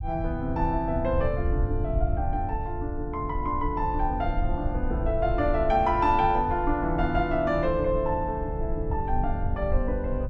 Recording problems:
rumble; below 78 Hz, SNR 5 dB

